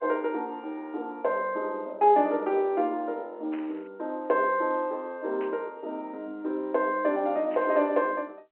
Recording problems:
telephone audio; 260 Hz to 3.2 kHz, G.711
static burst; at 3.5 s, at 5.5 s and at 7.5 s; peak -13 dB vs average level

